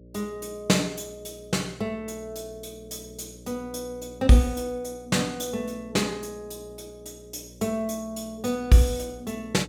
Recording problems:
hum; 60 Hz, harmonics up to 600 Hz, SNR 21 dB

